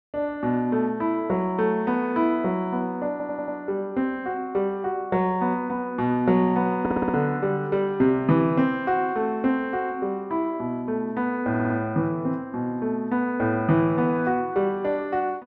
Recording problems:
audio stuttering; at 3 s, at 7 s and at 11 s

